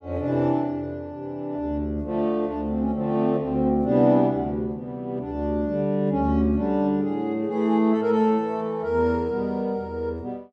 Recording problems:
none

